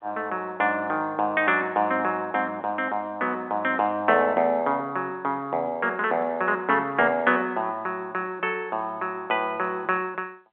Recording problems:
telephone audio; 190 Hz to 3.6 kHz, G.711

